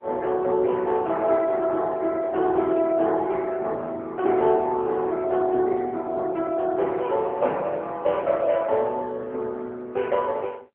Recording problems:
telephone audio; 260 Hz to 3.6 kHz, AMR-NB

